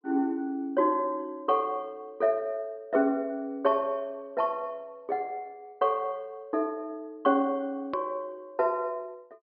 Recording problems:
treble cut off; nothing above 5.1 kHz
edit click; at 8 s

